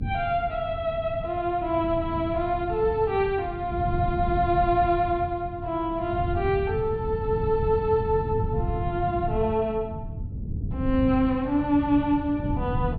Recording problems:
treble cut off; nothing above 4.8 kHz
rumble; below 150 Hz, SNR 7 dB

